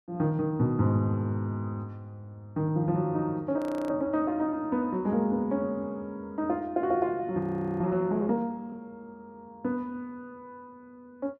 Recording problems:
audio freezing; at 3.5 s and at 7.5 s

